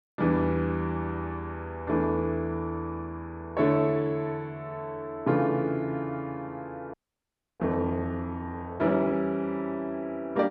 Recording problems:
frozen audio; at 7 s for 0.5 s

